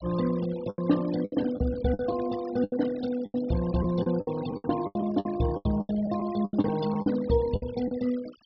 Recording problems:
low-pass filter; nothing above 5.5 kHz
denoising artefacts; signal-to-artefact ratio 16 dB
packet loss; 14% of the sound replaced, filled with the last packet

